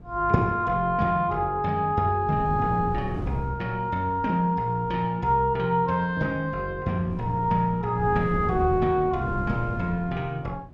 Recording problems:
wind on the microphone; below 220 Hz, SNR 10 dB

